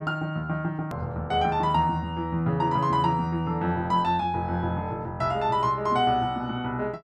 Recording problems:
click at an edit; at 1 s

